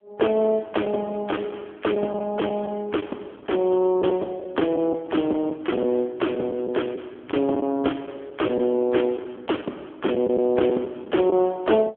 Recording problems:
phone line; 220 Hz to 3.4 kHz, AMR-NB
packet loss; 5% of the sound replaced, filled with the last packet

